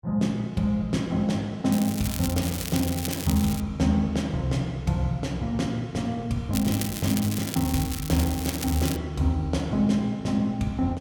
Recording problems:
crackle; from 1.5 to 3.5 s and from 6.5 to 9 s; loose cable, SNR 8 dB

